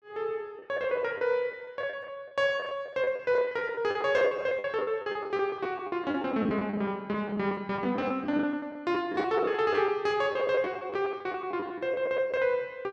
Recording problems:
lost packets; 16% of the sound replaced, filled with the last packet

